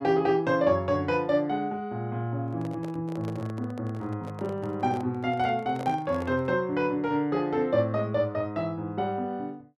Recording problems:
microphone handling noise; from 2.5 to 6.5 s; peak -6 dB vs average level

